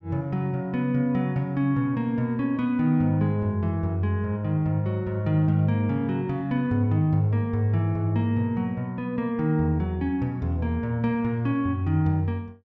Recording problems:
none

